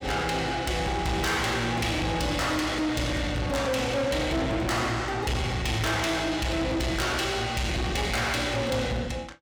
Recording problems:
distorted audio; soft clipping, signal-to-distortion ratio 8 dB

